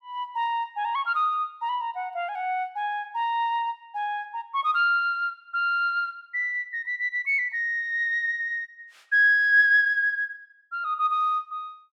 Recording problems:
none

